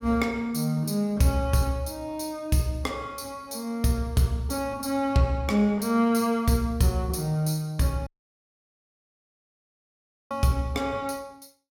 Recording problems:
dropout; at 8 s for 2 s

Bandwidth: 17.5 kHz